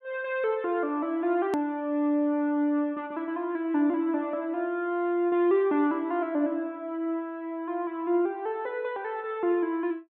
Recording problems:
low-pass filter; nothing above 4 kHz
edit click; at 1.5 s

